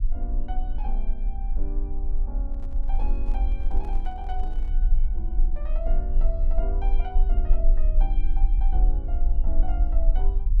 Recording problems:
rumble; below 38 Hz, strongest tone 24 Hz, SNR -13 dB
microphone handling noise; from 2.5 to 5 s; peak -6 dB vs average level

